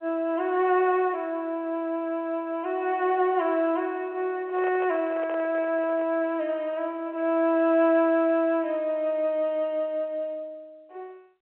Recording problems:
telephone audio; 260 Hz to 3.3 kHz, G.711
handling noise; from 4.5 to 6 s; peak -8 dB vs average level

